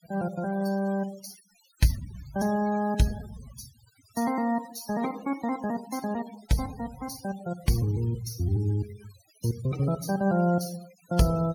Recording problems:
denoising artefacts; signal-to-artefact ratio 16 dB

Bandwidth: 18.5 kHz